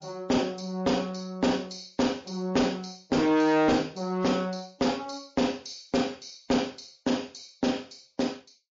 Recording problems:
lossy compression; MP3, log-spectral distance 5 dB, nothing above 6.2 kHz
distortion; hard clipping, signal-to-distortion ratio 10 dB

